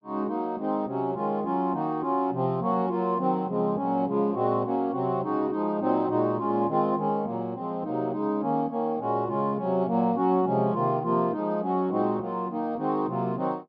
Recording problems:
low-pass filter; nothing above 5.5 kHz

